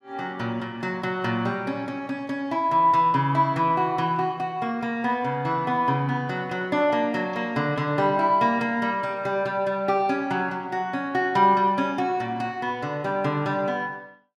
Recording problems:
none

